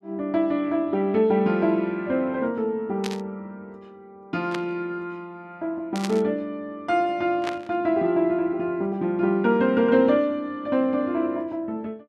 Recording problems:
static burst; 4 times, first at 3 s; peak -4 dB vs average level

